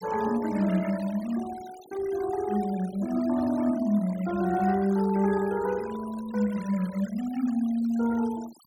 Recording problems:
noise reduction artefacts; signal-to-artefact ratio 19 dB

